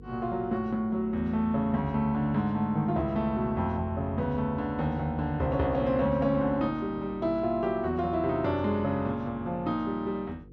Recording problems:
mains hum; 50 Hz, harmonics up to 500 Hz, SNR 20 dB

